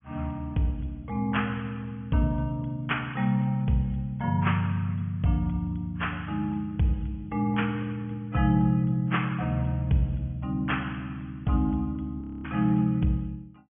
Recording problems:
low-pass filter; nothing above 3.3 kHz
codec artefacts; AAC, log-spectral distance 2 dB
audio freezing; at 12 s

